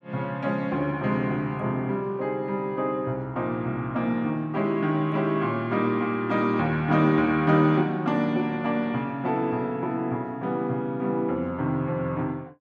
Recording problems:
none

